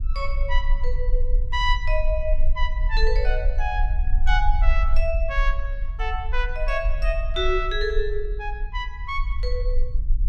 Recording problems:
low-frequency rumble; below 42 Hz, strongest tone 18 Hz, SNR -2 dB

